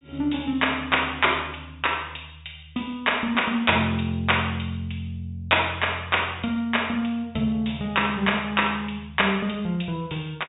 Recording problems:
treble cut off; nothing above 4 kHz

